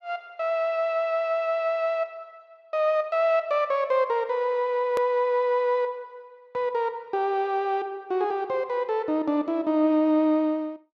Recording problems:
edit click; at 5 s

